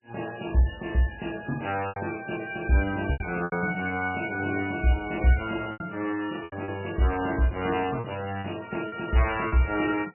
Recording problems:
lossy compression; MP3, log-spectral distance 9 dB, nothing above 2.4 kHz
lost packets; 6% of the sound replaced, filled with repeated pitch periods

